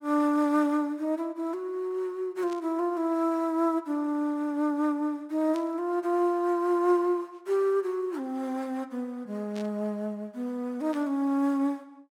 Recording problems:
burst of static; 4 times, first at 2.5 s; peak -13 dB vs average level

